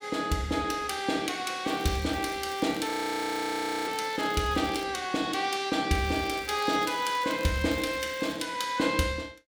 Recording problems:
crackling; from 1.5 to 5 s and from 6 to 8.5 s; loose cable, SNR 18 dB
frozen audio; at 3 s for 1 s

